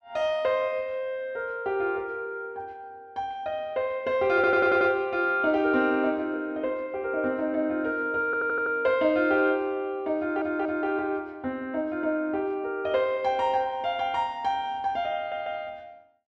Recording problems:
stutter; 4 times, first at 4.5 s

